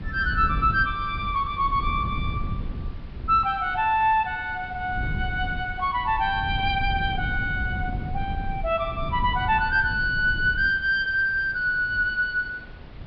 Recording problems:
treble missing; nothing above 5.5 kHz
background hiss; SNR 25 dB
wind on the microphone; below 130 Hz, SNR 9 dB

